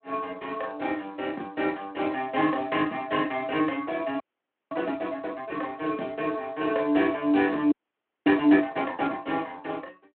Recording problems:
phone line; 220 Hz to 3.6 kHz, Speex
frozen audio; at 4 s for 0.5 s and at 7.5 s for 0.5 s

